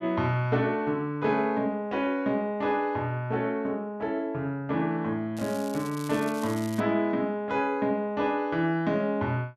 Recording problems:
crackle; from 5.5 to 7 s; loose cable, SNR 17 dB

